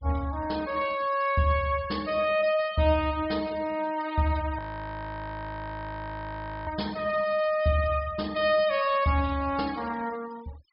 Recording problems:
low-pass filter; nothing above 5.5 kHz
noise reduction artefacts; signal-to-artefact ratio 20 dB
frozen audio; at 4.5 s for 2 s

